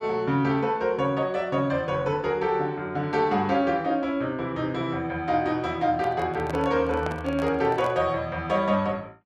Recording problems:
microphone handling noise; from 6 to 8 s; peak -4 dB vs average level

